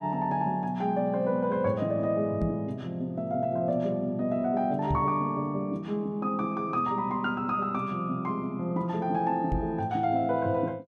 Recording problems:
knock on the microphone; at 2.5 s, at 5 s and at 9.5 s; peak +1 dB vs average level

